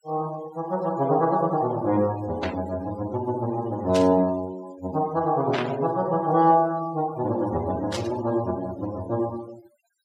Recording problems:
denoising artefacts; signal-to-artefact ratio 20 dB
static burst; 4 times, first at 2.5 s; peak -2 dB vs average level

